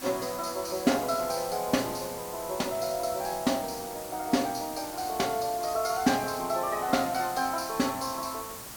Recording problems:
background hiss; slope -2 dB per octave, SNR 10 dB

